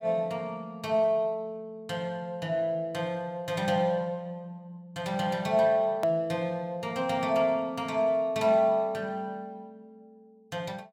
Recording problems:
hard cut with a click; at 6 s

